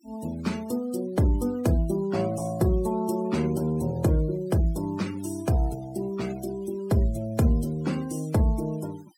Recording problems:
noise reduction artefacts; signal-to-artefact ratio 20 dB

